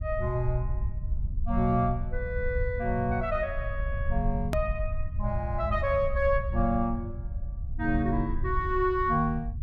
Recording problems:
low-frequency rumble; below 78 Hz, SNR 5 dB
click at an edit; at 4.5 s

